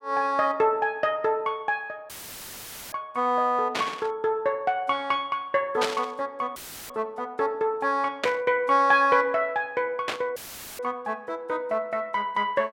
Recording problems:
dropout; at 2 s for 1 s, at 6.5 s and at 10 s; filled with static
burst of static; 4 times, first at 3.5 s; peak +3 dB vs average level

